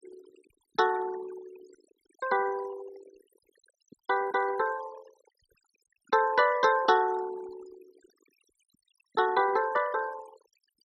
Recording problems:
denoising artefacts; signal-to-artefact ratio 17 dB

